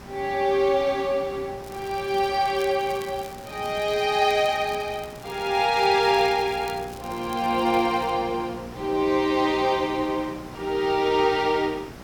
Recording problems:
electrical hum; 60 Hz, harmonics up to 1.1 kHz, SNR 22 dB
background hiss; slope -5 dB per octave, SNR 18 dB
crackling; from 1.5 to 8 s; loose cable, SNR 23 dB

